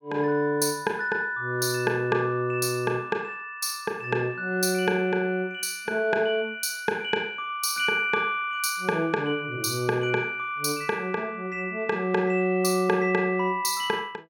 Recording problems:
none

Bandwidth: 17.5 kHz